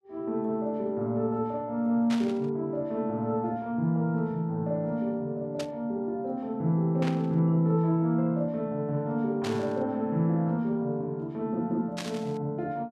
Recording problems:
static burst; 5 times, first at 2 s; peak -4 dB vs average level

